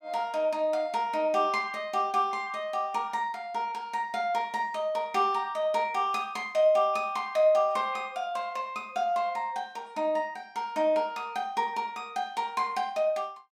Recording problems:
none

